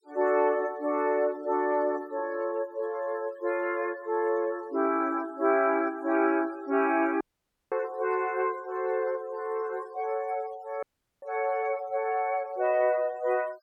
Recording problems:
denoising artefacts; signal-to-artefact ratio 25 dB
dropout; at 7 s for 0.5 s and at 11 s

